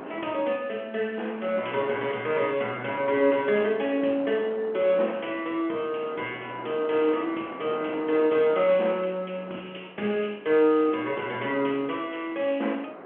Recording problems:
phone line; 240 Hz to 3.4 kHz, G.711
wind on the microphone; below 970 Hz, SNR 16 dB

